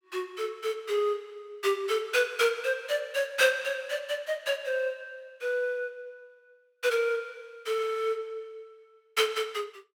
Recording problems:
none

